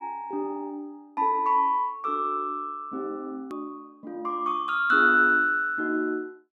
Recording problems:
edit click; at 3.5 s

